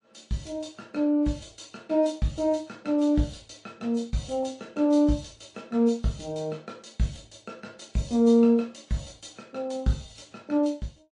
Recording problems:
lossy codec; AAC, then MP3, log-spectral distance 4 dB, nothing above 8.7 kHz

